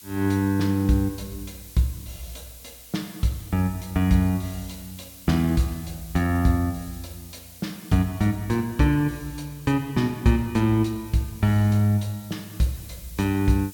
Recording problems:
hiss; SNR 20 dB

